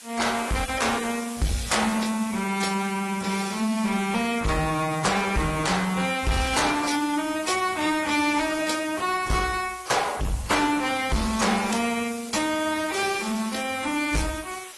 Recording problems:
lossy codec; AAC, then AAC, log-spectral distance 8 dB, nothing above 11.3 kHz
distortion; soft clipping, signal-to-distortion ratio 7 dB
hiss; slope +1 dB per octave, SNR 15 dB

